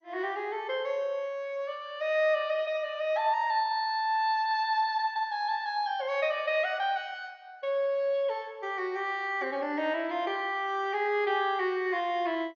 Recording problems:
lossy codec; MP2, log-spectral distance 2 dB, nothing above 6.2 kHz

